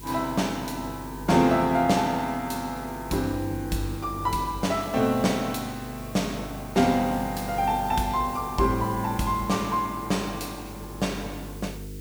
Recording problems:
hum; 50 Hz, harmonics up to 500 Hz, SNR 15 dB
hiss; SNR 19 dB

